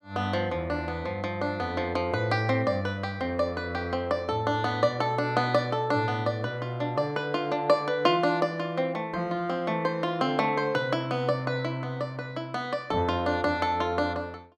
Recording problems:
none

